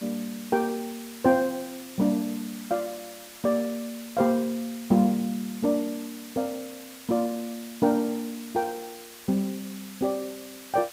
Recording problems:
background hiss; slope +1 dB per octave, SNR 15 dB

